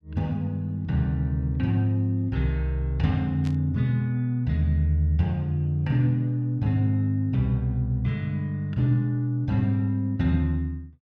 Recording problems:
burst of static; at 3.5 s; peak -14 dB vs average level

